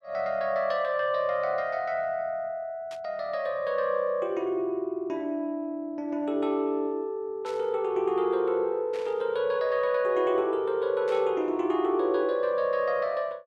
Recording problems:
static burst; 4 times, first at 3 s; peak -13 dB vs average level

